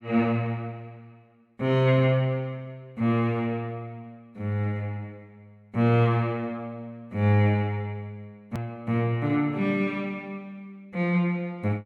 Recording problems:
hard cut with a click; at 8.5 s

